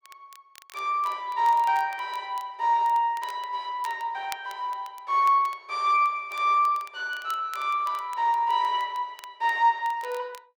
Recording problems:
crackle; vinyl, SNR 24 dB

